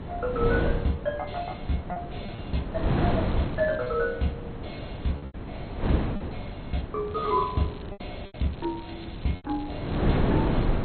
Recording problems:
codec artefacts; MP2, log-spectral distance 4 dB, nothing above 4.2 kHz
wind on the microphone; below 390 Hz, SNR 1 dB
lost packets; 3% of the sound replaced, filled with repeated pitch periods
crackling; at 3 s, at 7 s and from 8 to 10 s; loose cable, SNR 21 dB

